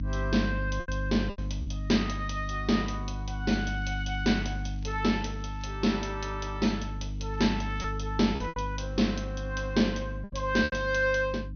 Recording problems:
treble cut off; nothing above 6.3 kHz
mains hum; 50 Hz, harmonics up to 300 Hz, SNR 6 dB
packet loss; 3% of the sound replaced, filled with repeated pitch periods
crackle; from 3.5 to 5.5 s and at 7.5 s; loose cable, SNR 29 dB

